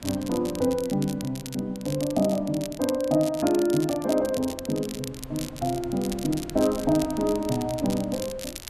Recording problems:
wind on the microphone; below 420 Hz, SNR 21 dB
crackle; vinyl, SNR 13 dB

